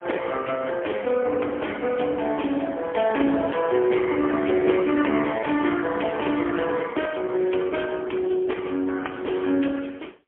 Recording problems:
phone line; 240 Hz to 3.3 kHz, AMR-NB, then MP3

